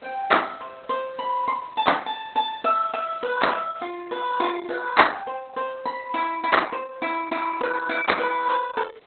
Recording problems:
lossy compression; Opus, log-spectral distance 5 dB, nothing above 4 kHz
hiss; SNR 29 dB

